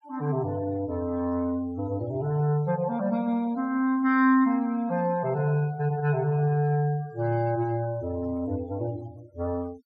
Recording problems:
denoising artefacts; signal-to-artefact ratio 25 dB

